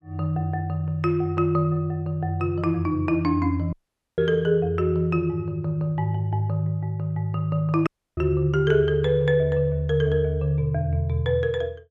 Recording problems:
audio cutting out; at 3.5 s and at 8 s

